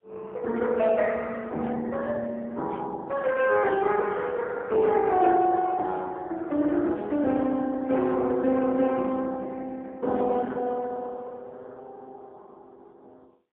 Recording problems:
telephone audio; 220 Hz to 3.8 kHz, AMR-NB, then MP3

